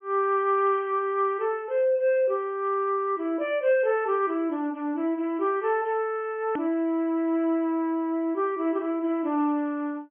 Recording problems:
treble cut off; nothing above 3.3 kHz
hard cut with a click; at 6.5 s

